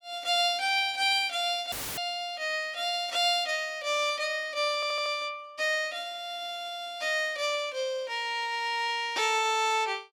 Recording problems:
dropout; at 1.5 s; filled with static
audio stuttering; at 5 s

